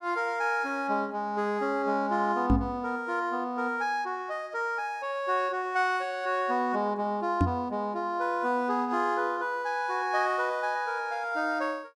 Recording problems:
microphone bump; at 2.5 s and at 7.5 s; peak +8 dB vs average level

